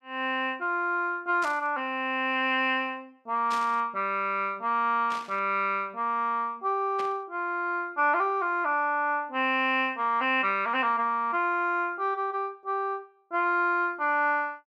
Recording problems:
burst of static; 4 times, first at 1.5 s; peak -8 dB vs average level

